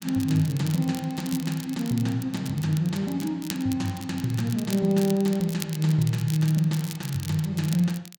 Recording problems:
crackle; vinyl, SNR 15 dB

